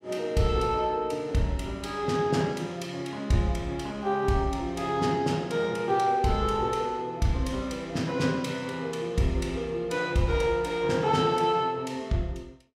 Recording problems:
none

